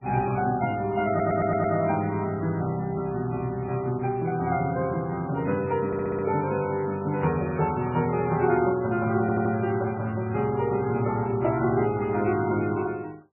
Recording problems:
lossy codec; MP3, log-spectral distance 3 dB, nothing above 2.4 kHz
audio stuttering; at 1 s, at 6 s and at 9 s

